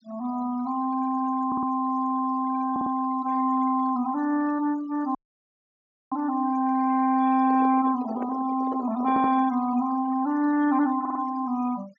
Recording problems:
treble cut off; nothing above 7.1 kHz
denoising artefacts; signal-to-artefact ratio 22 dB
audio stuttering; 4 times, first at 1.5 s
dropout; at 5 s for 1 s
handling noise; from 7.5 to 9.5 s; peak -8 dB vs average level

